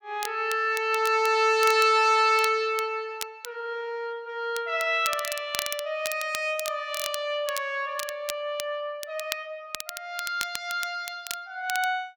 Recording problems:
crackling; vinyl, SNR 11 dB

